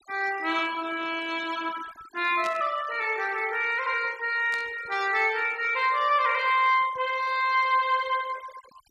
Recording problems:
noise reduction artefacts; signal-to-artefact ratio 19 dB
burst of static; at 2.5 s and at 4.5 s; peak -9 dB vs average level

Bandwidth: 14 kHz